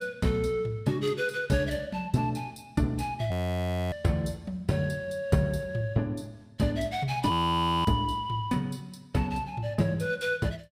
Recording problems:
audio freezing; at 3.5 s for 0.5 s and at 7.5 s for 0.5 s

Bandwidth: 15.5 kHz